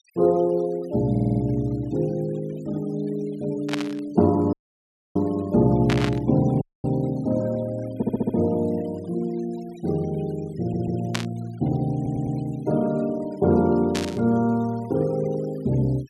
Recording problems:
denoising artefacts; signal-to-artefact ratio 25 dB
audio stuttering; 4 times, first at 1 s
burst of static; 4 times, first at 3.5 s; peak +1 dB vs average level
dropout; at 4.5 s for 0.5 s and at 6.5 s

